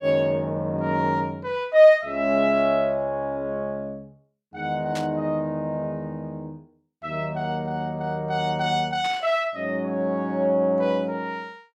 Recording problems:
burst of static; at 5 s and at 9 s; peak -7 dB vs average level

